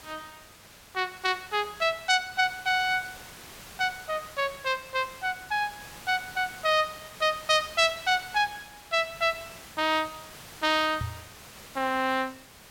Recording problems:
background hiss; slope -2 dB per octave, SNR 18 dB
microphone thump; at 11 s; peak -3 dB vs average level

